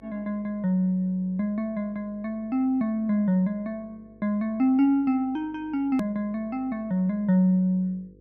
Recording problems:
hum; 50 Hz, harmonics up to 500 Hz, SNR 29 dB
hard cut with a click; at 6 s

